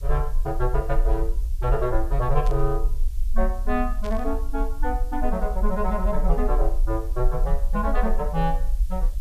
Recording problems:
hiss; slope +4 dB per octave, SNR 24 dB
low-frequency rumble; below 44 Hz, strongest tone 22 Hz, SNR 0 dB
burst of static; at 2.5 s and at 4 s; peak -9 dB vs average level

